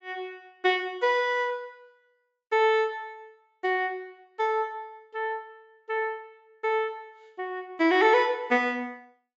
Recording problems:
treble cut off; nothing above 8 kHz

